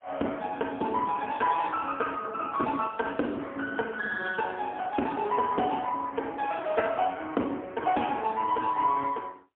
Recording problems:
telephone audio; 220 Hz to 3.4 kHz, AMR-NB, then MP3

